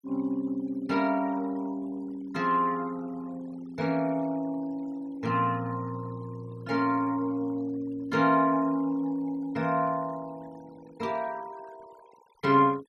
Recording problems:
denoising artefacts; signal-to-artefact ratio 23 dB

